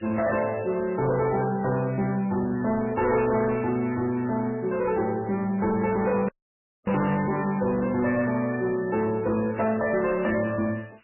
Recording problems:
lossy compression; MP3, log-spectral distance 5 dB, nothing above 2.4 kHz
distortion; soft clipping, signal-to-distortion ratio 11 dB
background hiss; SNR 29 dB
static burst; at 3.5 s; peak -8 dB vs average level
audio cutting out; at 6.5 s for 0.5 s

